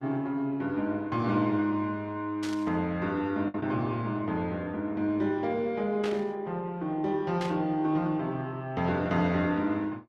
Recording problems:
lossy compression; Opus, log-spectral distance 2 dB
packet loss; 0.8% of the sound replaced, filled with the last packet
burst of static; at 2.5 s, at 6 s and at 7.5 s; peak -5 dB vs average level

